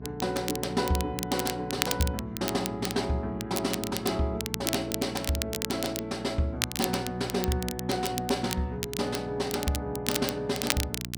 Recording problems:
mains hum; 60 Hz, harmonics up to 720 Hz, SNR 11 dB
crackle; vinyl, SNR 4 dB

